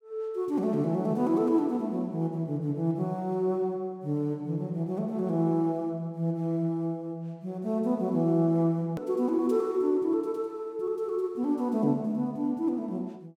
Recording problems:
click at an edit; at 9 s

